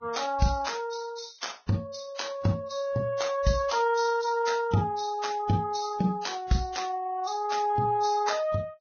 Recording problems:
lossy codec; Vorbis, log-spectral distance 4 dB, nothing above 6.3 kHz

